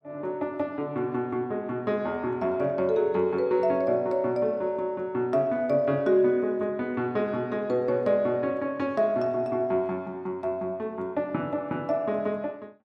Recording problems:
none

